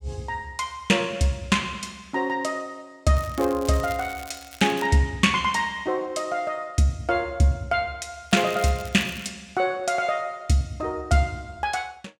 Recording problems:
crackle; from 3 to 5 s and at 8.5 s; loose cable, SNR 18 dB

